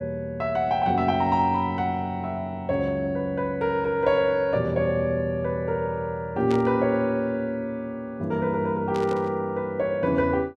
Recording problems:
burst of static; at 6.5 s and at 9 s; peak -9 dB vs average level

